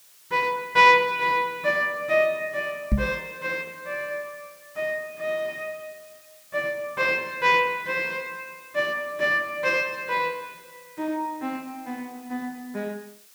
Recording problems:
hiss; slope +2 dB per octave, SNR 25 dB
knock on the microphone; at 3 s; peak +6 dB vs average level

